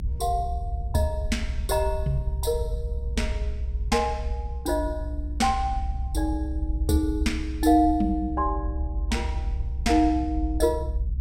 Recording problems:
rumble; below 66 Hz, strongest tone 64 Hz, SNR 4 dB

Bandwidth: 16 kHz